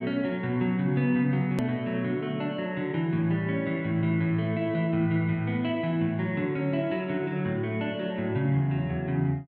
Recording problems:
click at an edit; at 1.5 s

